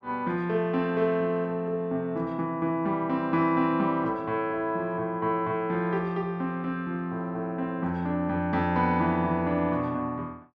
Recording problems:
none

